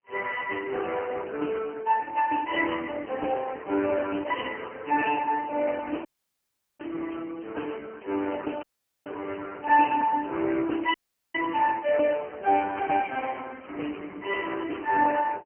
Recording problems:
telephone audio; 260 Hz to 3 kHz, AMR-NB
dropout; at 6 s for 0.5 s, at 8.5 s and at 11 s

